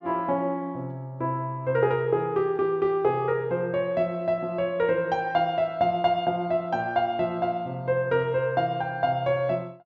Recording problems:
none

